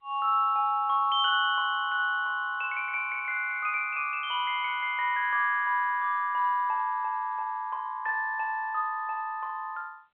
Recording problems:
phone line; 150 Hz to 3.4 kHz, G.711

